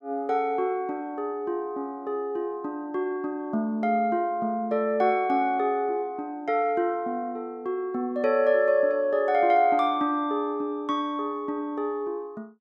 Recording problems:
none

